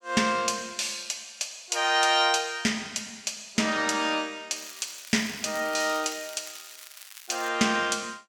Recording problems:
crackling; from 4.5 to 7.5 s; loose cable, SNR 17 dB

